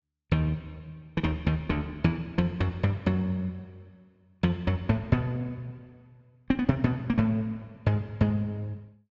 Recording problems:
low-pass filter; nothing above 8 kHz

